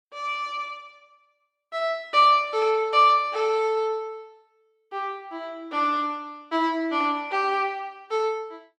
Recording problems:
none

